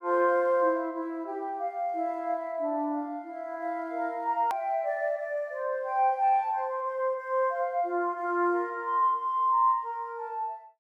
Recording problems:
edit click; at 4.5 s

